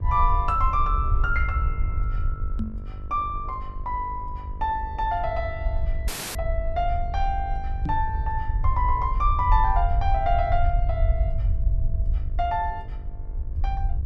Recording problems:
electrical hum; 50 Hz, harmonics up to 1.2 kHz, SNR 21 dB
rumble; below 68 Hz, SNR 1 dB
microphone bump; at 2.5 s and at 8 s; peak +2 dB vs average level
audio cutting out; at 6 s; filled with static

